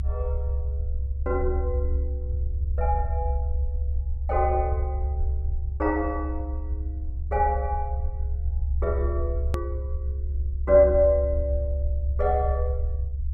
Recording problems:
rumble; below 70 Hz, strongest tone 68 Hz, SNR 2 dB
click at an edit; at 9.5 s

